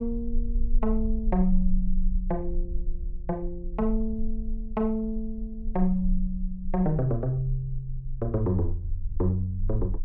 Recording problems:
low-frequency rumble; below 36 Hz, strongest tone 22 Hz, SNR 5 dB

